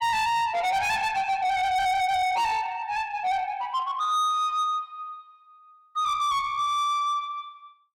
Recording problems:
distortion; soft clipping, signal-to-distortion ratio 7 dB

